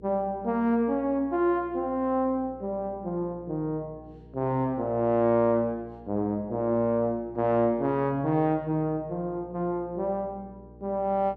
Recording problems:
hum; 60 Hz, harmonics up to 480 Hz, SNR 23 dB

